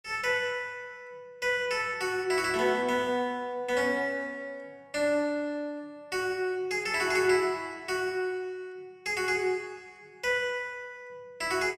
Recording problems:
none

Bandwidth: 14.5 kHz